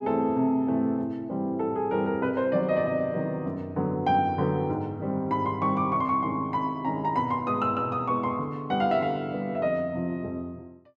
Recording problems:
none

